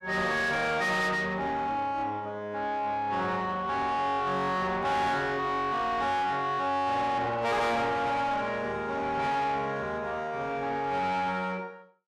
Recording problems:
distortion; soft clipping, signal-to-distortion ratio 6 dB

